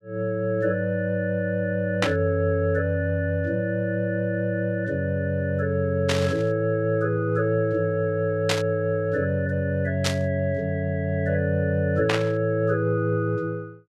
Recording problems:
burst of static; 5 times, first at 2 s; peak +5 dB vs average level

